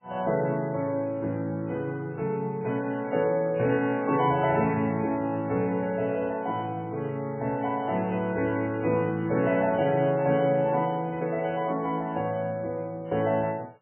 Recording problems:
lossy compression; MP3, log-spectral distance 2 dB, nothing above 2.7 kHz

